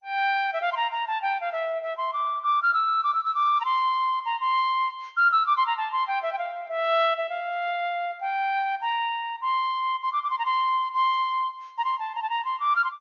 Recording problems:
lossy codec; MP3, then MP2, log-spectral distance 2 dB

